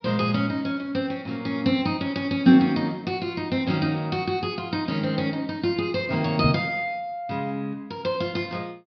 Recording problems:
low-pass filter; nothing above 5.5 kHz
microphone bump; at 6.5 s; peak +7 dB vs average level

